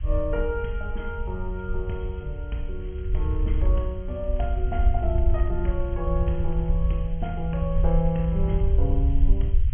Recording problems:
low-pass filter; nothing above 3.3 kHz
hiss; SNR 27 dB
rumble; below 66 Hz, SNR -3 dB
crackling; at 3 s, from 4.5 to 6.5 s and at 7.5 s; loose cable, SNR 27 dB

